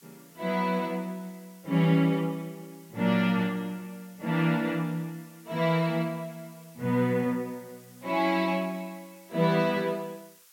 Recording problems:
background hiss; SNR 26 dB

